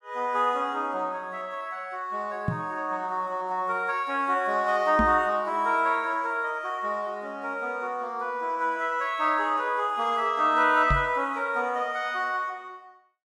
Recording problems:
microphone bump; at 2.5 s, at 5 s and at 11 s; peak +3 dB vs average level

